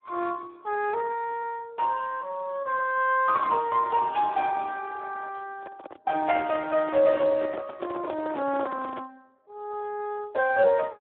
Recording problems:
telephone audio; 240 Hz to 2.8 kHz, Speex
handling noise; from 5.5 to 9 s; peak -5 dB vs average level

